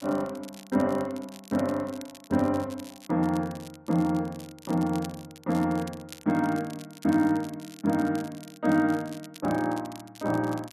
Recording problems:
crackling; vinyl, SNR 20 dB

